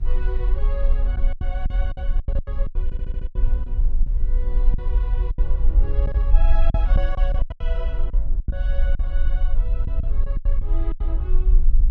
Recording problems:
hum; 60 Hz, harmonics up to 720 Hz, SNR 20 dB
rumble; below 46 Hz, strongest tone 20 Hz, SNR -14 dB
wind noise; below 220 Hz, SNR 16 dB
packet loss; 12% of the sound replaced, filled with silence
stutter; at 3 s

